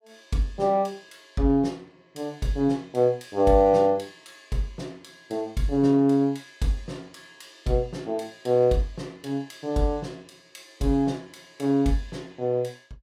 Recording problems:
none

